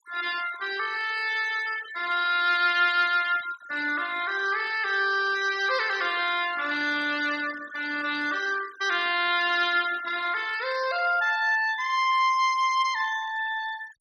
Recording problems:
noise reduction artefacts; signal-to-artefact ratio 15 dB

